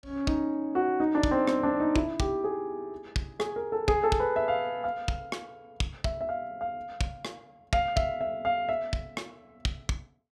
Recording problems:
none

